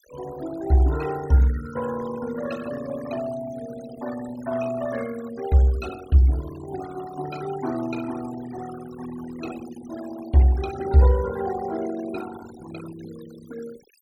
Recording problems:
noise reduction artefacts; signal-to-artefact ratio 16 dB

